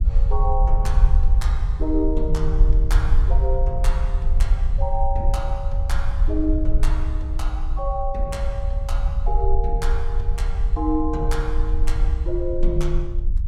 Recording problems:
low-frequency rumble; below 52 Hz, SNR -5 dB

